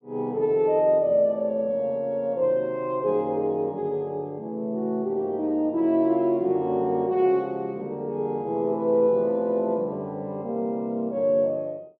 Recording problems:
none

